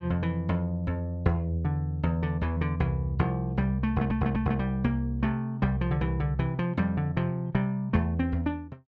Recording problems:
audio stuttering; at 4 s

